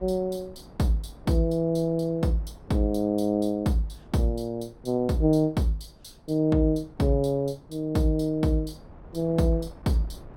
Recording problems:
wind noise; below 410 Hz, SNR 24 dB

